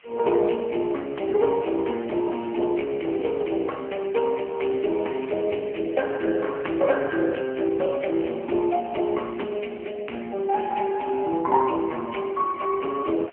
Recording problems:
phone line; 260 Hz to 2.9 kHz, AMR-NB
hiss; SNR 28 dB

